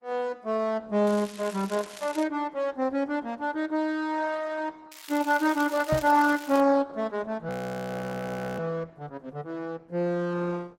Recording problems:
lossy compression; Opus, log-spectral distance 4 dB, nothing above 16.1 kHz
crackling; from 1 to 2 s and from 5 to 6.5 s; loose cable, SNR 16 dB
microphone bump; at 6 s; peak +3 dB vs average level
audio freezing; at 7.5 s for 1 s

